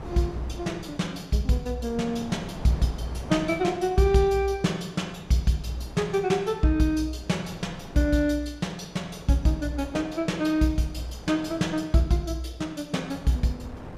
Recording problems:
wind noise; below 610 Hz, SNR 17 dB

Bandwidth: 14.5 kHz